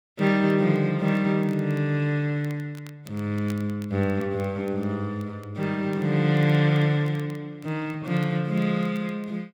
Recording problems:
crackle; vinyl, SNR 29 dB

